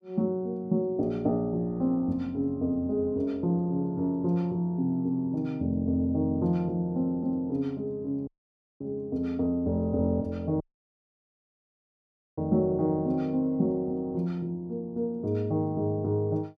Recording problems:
dropout; at 8.5 s for 0.5 s and at 11 s for 2 s

